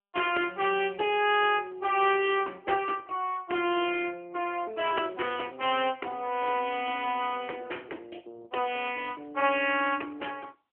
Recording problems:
telephone audio; 300 Hz to 3.3 kHz, AMR-NB

